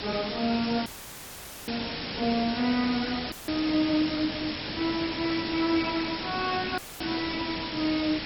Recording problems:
lossy codec; AAC, then MP2, log-spectral distance 17 dB
hiss; SNR 4 dB
dropout; at 1 s for 1 s, at 3.5 s and at 7 s; filled with static

